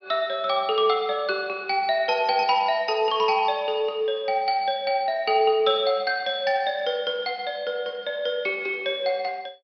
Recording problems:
treble missing; nothing above 5.5 kHz

